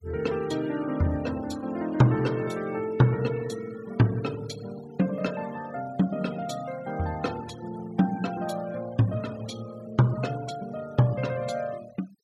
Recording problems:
denoising artefacts; signal-to-artefact ratio 19 dB

